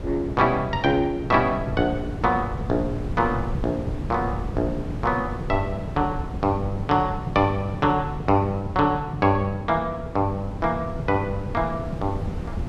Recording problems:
wind on the microphone; below 200 Hz, SNR 9 dB

